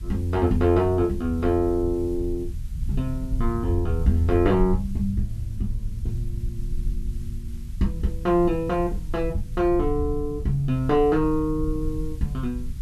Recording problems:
hiss; slope +1 dB per octave, SNR 30 dB
low-frequency rumble; below 72 Hz, SNR 8 dB

